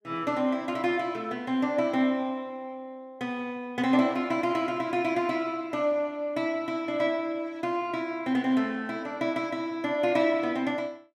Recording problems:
none

